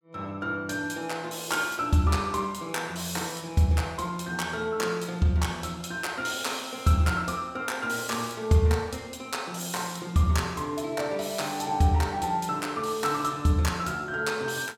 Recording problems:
none

